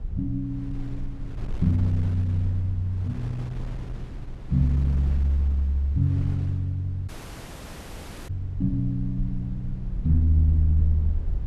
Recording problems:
low-frequency rumble; below 58 Hz, SNR 12 dB
wind on the microphone; below 230 Hz, SNR 17 dB
audio cutting out; at 7 s for 1 s

